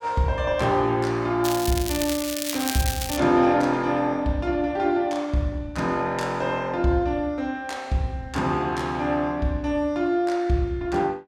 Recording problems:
crackling; from 1.5 to 3 s; loose cable, SNR 6 dB

